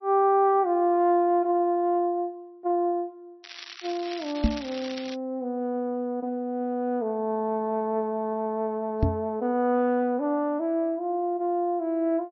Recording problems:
lossy compression; MP3, log-spectral distance 3 dB
crackling; from 3.5 to 5 s; loose cable, SNR 14 dB
microphone bump; at 4.5 s and at 9 s; peak +6 dB vs average level

